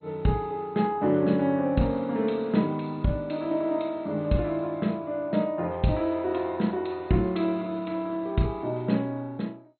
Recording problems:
lossy compression; MP2, log-spectral distance 2 dB, nothing above 4.2 kHz

